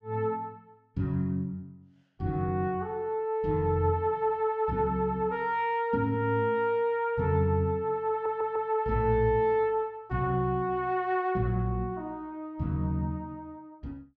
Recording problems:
audio stuttering; at 8 s

